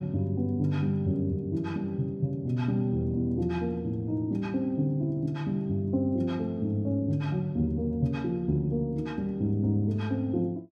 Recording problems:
none

